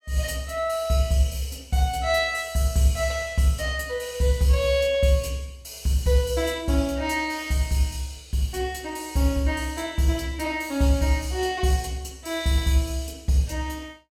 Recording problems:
none

